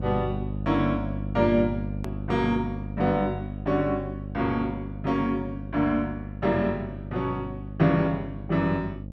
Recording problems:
hum; 50 Hz, harmonics up to 600 Hz, SNR 8 dB
hard cut with a click; at 2 s

